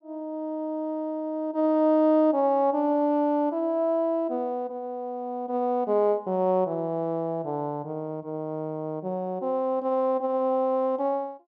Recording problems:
none

